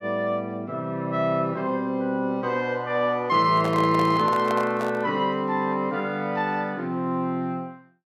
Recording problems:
handling noise; from 3.5 to 5 s; peak -3 dB vs average level

